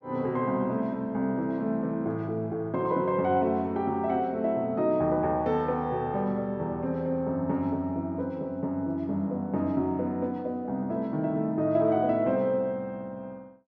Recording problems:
none

